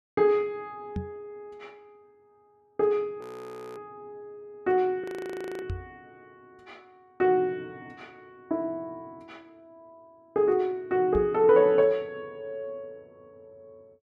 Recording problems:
microphone bump; at 1 s, at 5.5 s and at 11 s; peak -1 dB vs average level
frozen audio; at 3 s for 0.5 s and at 5 s for 0.5 s

